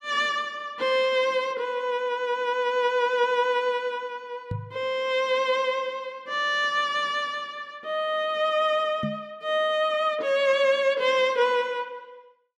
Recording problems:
knock on the microphone; at 4.5 s and at 9 s; peak -2 dB vs average level

